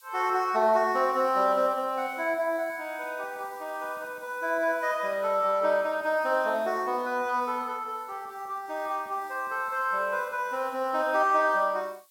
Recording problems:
background hiss; slope +5 dB per octave, SNR 27 dB

